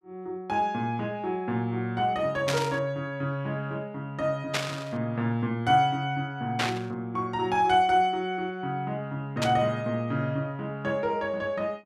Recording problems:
burst of static; 4 times, first at 2.5 s; peak +4 dB vs average level

